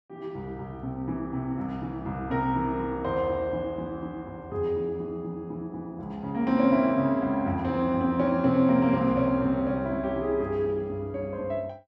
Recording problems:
none

